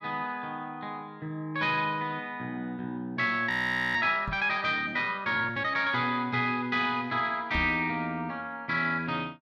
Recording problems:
frozen audio; at 3.5 s
knock on the microphone; at 4.5 s and at 7.5 s; peak -4 dB vs average level

